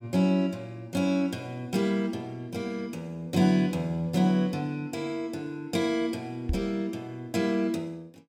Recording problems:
microphone bump; at 6.5 s; peak +3 dB vs average level

